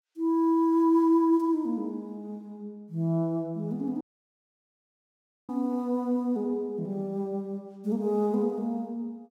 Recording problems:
audio cutting out; at 4 s for 1.5 s

